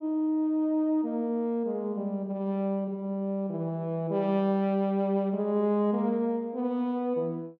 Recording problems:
none

